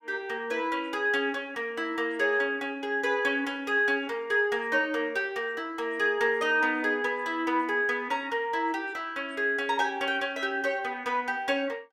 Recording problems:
none

